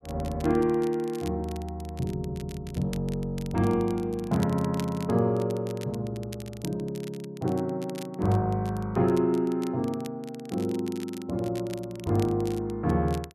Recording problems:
crackling; vinyl, SNR 20 dB

